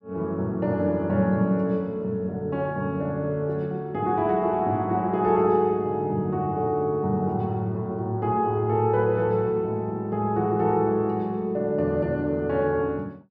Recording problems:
none

